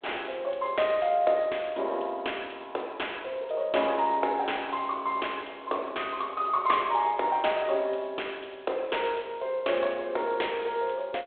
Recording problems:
phone line; 300 Hz to 3.5 kHz, G.726

